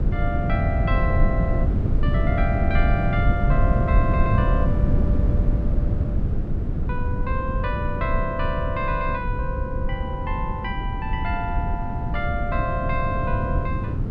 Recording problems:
low-frequency rumble; below 130 Hz, SNR -4 dB

